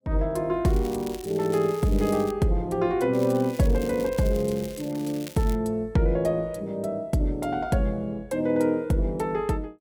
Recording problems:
crackling; from 0.5 to 2.5 s and from 3 to 5.5 s; loose cable, SNR 19 dB

